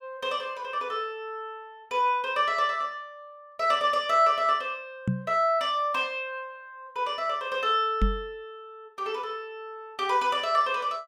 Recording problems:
knock on the microphone; at 5 s and at 8 s; peak +4 dB vs average level

